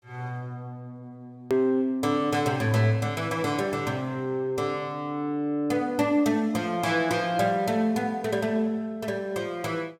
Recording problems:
click at an edit; at 1.5 s

